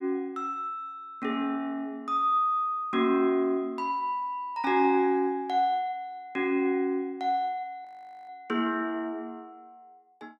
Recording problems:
frozen audio; at 8 s

